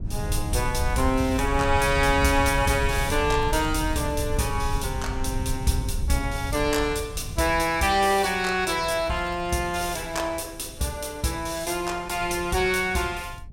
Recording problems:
wind noise; below 100 Hz, SNR 7 dB
crackling; from 0.5 to 4.5 s and from 7.5 to 10 s; loose cable, SNR 29 dB

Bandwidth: 16.5 kHz